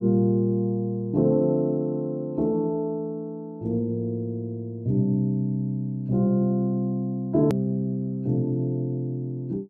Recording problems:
hard cut with a click; at 7.5 s

